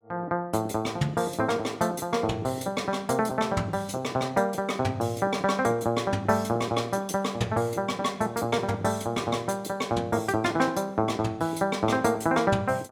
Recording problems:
none

